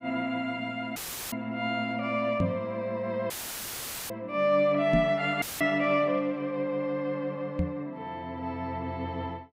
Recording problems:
dropout; at 1 s, at 3.5 s for 1 s and at 5.5 s; filled with static
microphone thump; at 2.5 s, at 5 s and at 7.5 s; peak +5 dB vs average level

